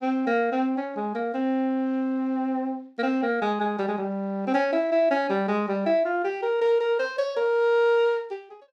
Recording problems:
none

